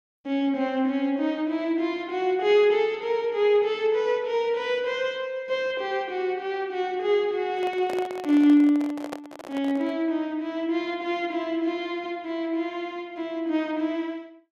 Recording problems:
handling noise; from 7.5 to 10 s; peak -5 dB vs average level

